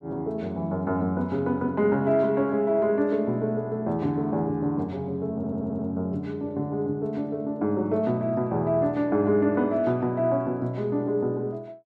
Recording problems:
audio stuttering; at 5.5 s

